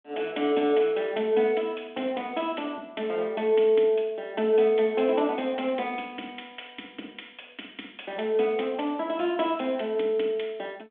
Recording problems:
telephone audio; 240 Hz to 3.5 kHz, G.726

